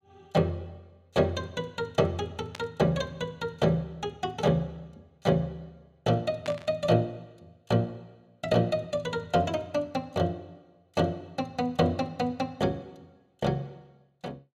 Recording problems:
static burst; at 2.5 s and at 6.5 s; peak -5 dB vs average level

